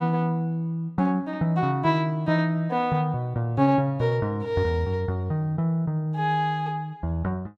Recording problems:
none

